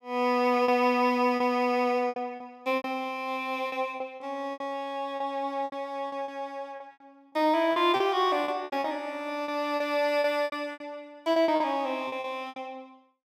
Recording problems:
lost packets; 13% of the sound replaced, filled with repeated pitch periods

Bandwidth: 16 kHz